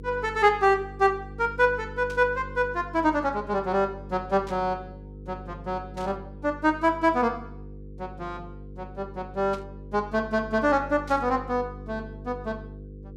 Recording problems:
electrical hum; 50 Hz, harmonics up to 500 Hz, SNR 16 dB
burst of static; 5 times, first at 2 s; peak -14 dB vs average level

